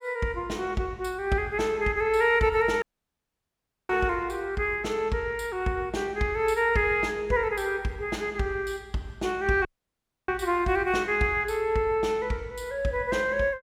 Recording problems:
audio cutting out; at 3 s for 1 s and at 9.5 s for 0.5 s

